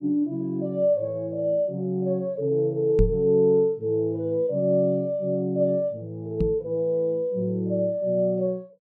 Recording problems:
microphone thump; at 3 s and at 6.5 s; peak +5 dB vs average level

